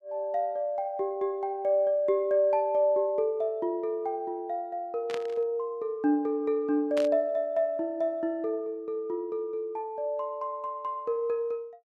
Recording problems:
burst of static; at 5 s and at 7 s; peak -5 dB vs average level

